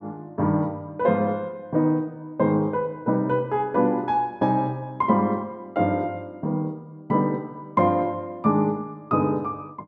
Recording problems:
none

